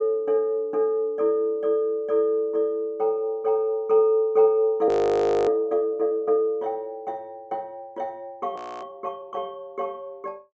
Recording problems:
treble missing; nothing above 8 kHz
frozen audio; at 5 s for 0.5 s and at 8.5 s

